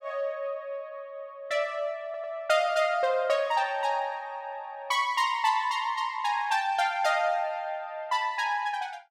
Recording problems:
stutter; at 2 s

